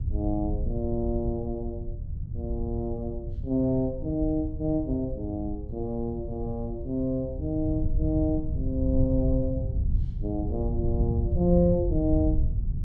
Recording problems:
low-frequency rumble; below 100 Hz, SNR 3 dB

